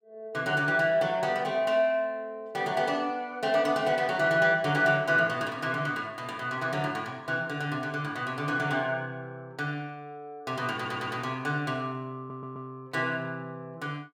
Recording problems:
stutter; at 11 s and at 12 s

